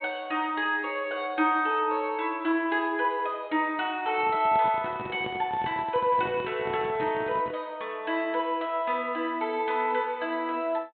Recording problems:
treble missing; nothing above 4 kHz
handling noise; from 4 to 7.5 s; peak -6 dB vs average level

